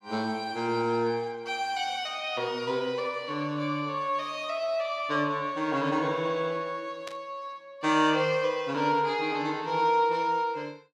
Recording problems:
burst of static; at 7 s; peak -8 dB vs average level

